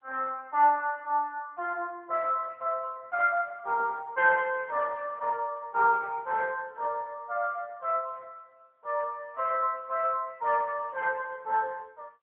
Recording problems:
telephone audio; 300 Hz to 3.1 kHz, AMR-NB

